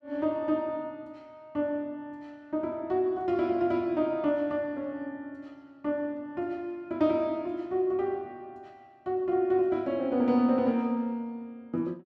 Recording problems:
none

